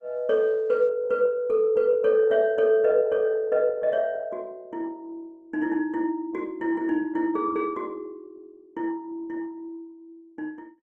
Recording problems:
codec artefacts; Opus, log-spectral distance 2 dB

